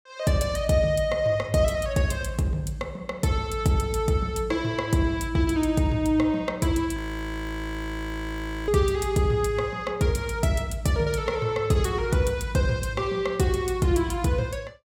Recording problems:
audio freezing; at 7 s for 1.5 s

